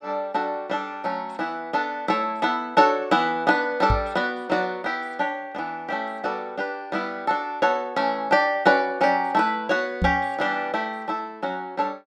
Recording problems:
knock on the microphone; at 4 s and at 10 s; peak +3 dB vs average level

